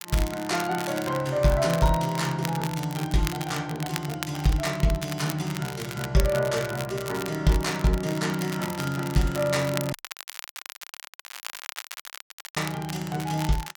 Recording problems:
crackle; vinyl, SNR 11 dB
audio cutting out; at 10 s for 2.5 s

